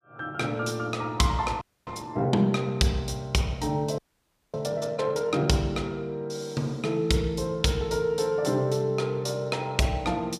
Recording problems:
frozen audio; at 1.5 s and at 4 s for 0.5 s

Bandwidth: 15 kHz